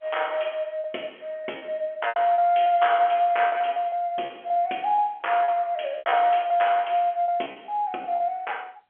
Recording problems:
telephone audio; 300 Hz to 3.3 kHz, G.711
lost packets; 11% of the sound replaced, filled with repeated pitch periods

